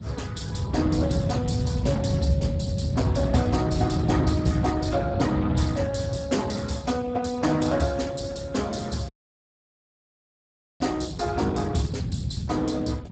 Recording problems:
lossy compression; Speex, log-spectral distance 4 dB, nothing above 7.8 kHz
low-frequency rumble; below 170 Hz, SNR 2 dB
wind on the microphone; below 470 Hz, SNR 21 dB
dropout; at 9 s for 1.5 s

